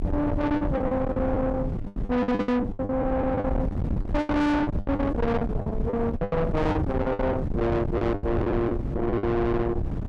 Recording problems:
distortion; soft clipping, signal-to-distortion ratio 7 dB
wind on the microphone; below 400 Hz, SNR 4 dB
lost packets; 15% of the sound replaced, filled with the last packet

